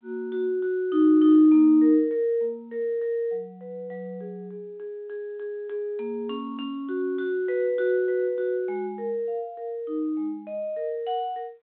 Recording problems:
telephone audio; 240 Hz to 3.5 kHz, G.726

